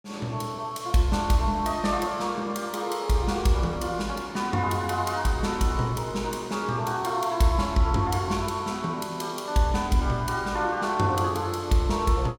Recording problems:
none

